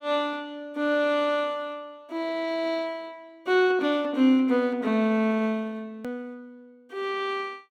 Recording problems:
click at an edit; at 6 s

